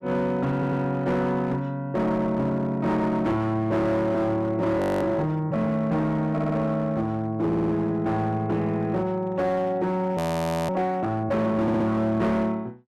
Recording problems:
distorted audio; hard clipping, signal-to-distortion ratio 12 dB
audio stuttering; 4 times, first at 0.5 s
audio freezing; at 5 s and at 10 s for 0.5 s

